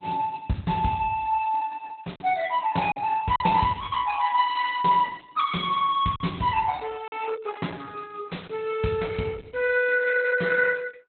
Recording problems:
codec artefacts; Opus, log-spectral distance 5 dB
lost packets; 1.8% of the sound replaced, filled with silence

